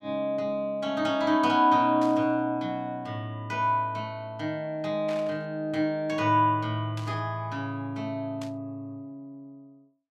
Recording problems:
static burst; 4 times, first at 2 s; peak -11 dB vs average level

